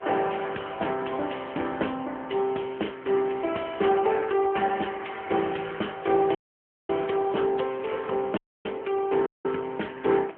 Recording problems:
phone line; 220 Hz to 3.2 kHz, AMR-NB
wind on the microphone; below 1.3 kHz, SNR 24 dB
dropout; at 6.5 s for 0.5 s, at 8.5 s and at 9.5 s

